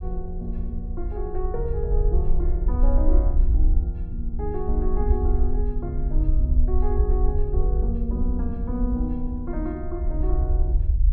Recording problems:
rumble; below 60 Hz, SNR -6 dB

